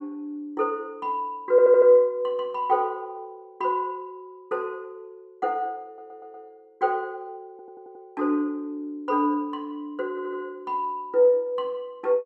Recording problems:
audio stuttering; 4 times, first at 1.5 s

